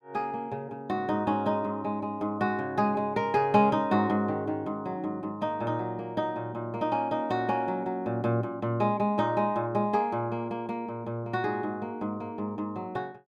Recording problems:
none

